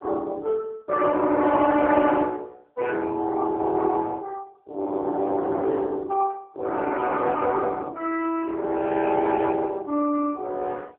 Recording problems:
phone line; 260 Hz to 2.5 kHz, AMR-NB

